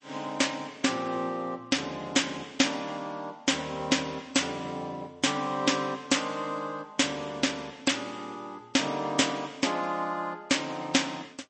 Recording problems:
codec artefacts; MP3, log-spectral distance 4 dB, nothing above 8.2 kHz

